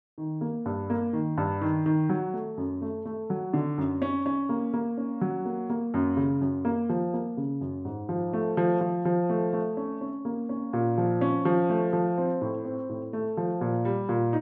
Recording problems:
none

